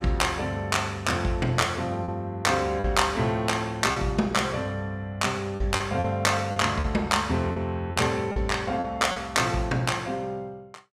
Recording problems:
lost packets; 5% of the sound replaced, filled with repeated pitch periods

